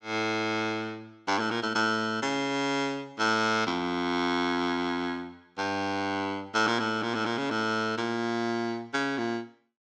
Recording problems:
none

